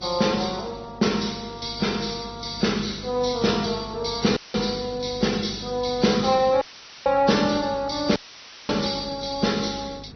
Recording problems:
treble missing; nothing above 6 kHz
codec artefacts; AAC, then Vorbis, log-spectral distance 4 dB
hum; 50 Hz, harmonics up to 550 Hz, SNR 20 dB
background hiss; slope -5 dB per octave, SNR 25 dB
audio cutting out; at 4.5 s, at 6.5 s and at 8 s for 0.5 s; filled with static

